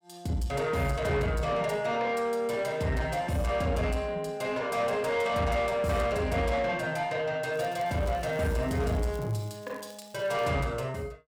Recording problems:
distortion; soft clipping, signal-to-distortion ratio 11 dB
crackle; from 7.5 to 10 s; loose cable, SNR 25 dB

